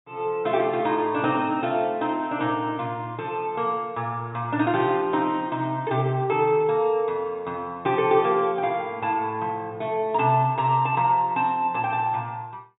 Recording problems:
treble cut off; nothing above 4 kHz

